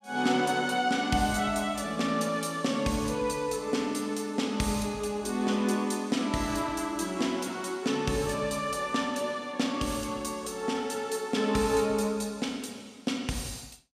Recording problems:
none

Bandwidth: 15 kHz